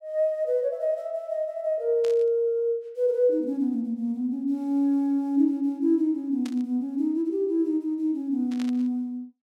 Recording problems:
static burst; at 2 s, at 6.5 s and at 8.5 s; peak -11 dB vs average level

